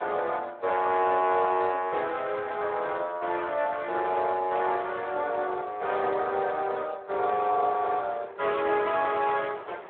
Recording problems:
phone line; 320 Hz to 3.7 kHz, Speex
wind noise; below 1.2 kHz, SNR 20 dB

